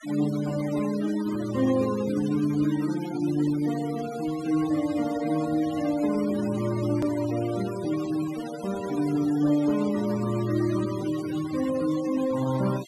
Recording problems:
noise reduction artefacts; signal-to-artefact ratio 15 dB
edit click; at 7 s

